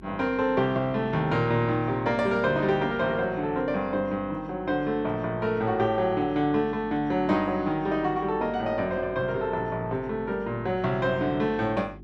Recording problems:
hum; 50 Hz, harmonics up to 400 Hz, SNR 21 dB

